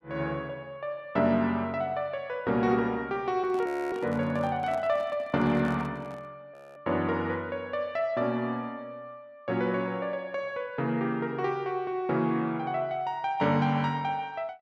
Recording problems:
microphone handling noise; from 3.5 to 6.5 s; peak -11 dB vs average level
audio freezing; at 3.5 s and at 6.5 s

